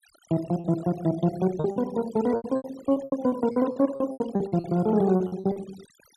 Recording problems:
denoising artefacts; signal-to-artefact ratio 20 dB
lost packets; 17% of the sound replaced, filled with repeated pitch periods

